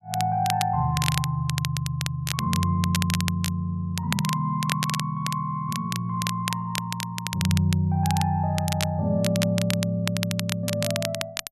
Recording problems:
crackle; vinyl, SNR 6 dB

